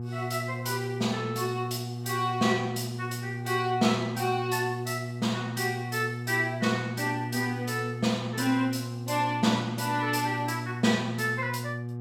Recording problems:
hum; 60 Hz, harmonics up to 840 Hz, SNR 7 dB

